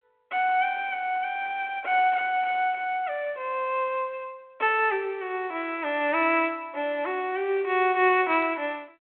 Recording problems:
telephone audio; 240 Hz to 3.5 kHz, G.726

